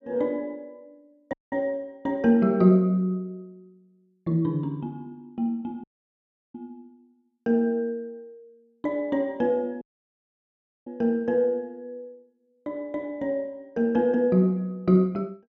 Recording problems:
dropout; at 1.5 s, at 6 s for 0.5 s and at 10 s for 1 s

